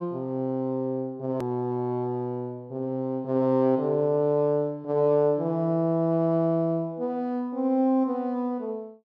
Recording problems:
edit click; at 1.5 s

